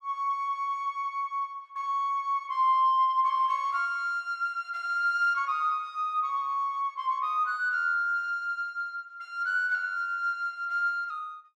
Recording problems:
none

